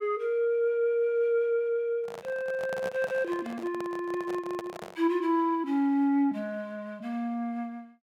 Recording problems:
microphone handling noise; from 2 to 5 s; peak -5 dB vs average level

